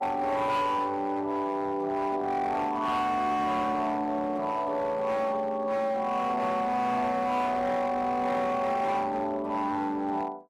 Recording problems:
lossy codec; Opus, log-spectral distance 2 dB, nothing above 14.1 kHz
distortion; hard clipping, uneven, signal-to-distortion ratio 12 dB

